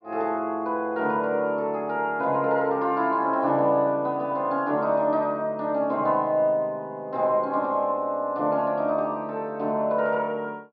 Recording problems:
treble missing; nothing above 5.5 kHz

